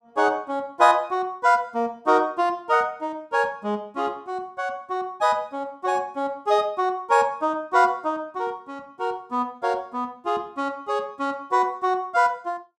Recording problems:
none

